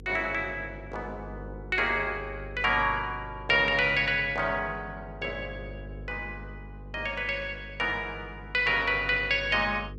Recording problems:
hum; 50 Hz, harmonics up to 500 Hz, SNR 16 dB

